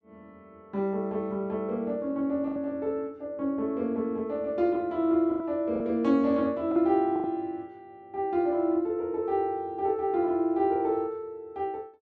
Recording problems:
lost packets; 3% of the sound replaced, filled with the last packet

